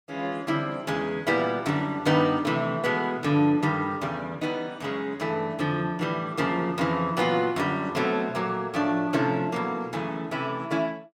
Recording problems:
none

